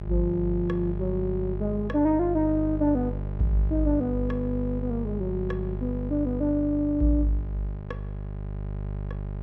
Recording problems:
hum; 50 Hz, harmonics up to 800 Hz, SNR 6 dB

